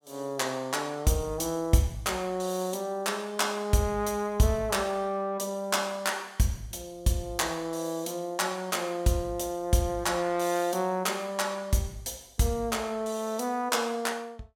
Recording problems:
none

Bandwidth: 17 kHz